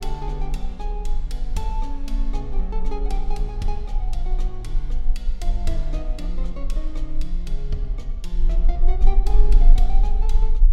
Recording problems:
rumble; below 34 Hz, strongest tone 26 Hz, SNR -9 dB

